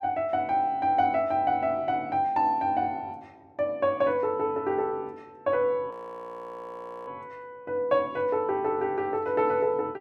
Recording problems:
frozen audio; at 6 s for 1 s

